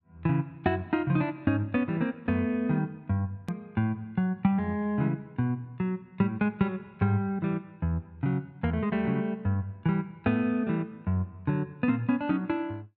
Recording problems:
edit click; at 3.5 s

